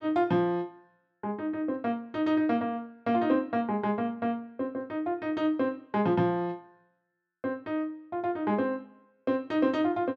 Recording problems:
none

